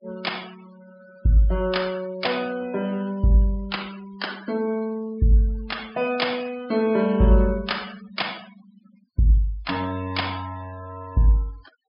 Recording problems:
treble missing; nothing above 5.5 kHz
noise reduction artefacts; signal-to-artefact ratio 22 dB

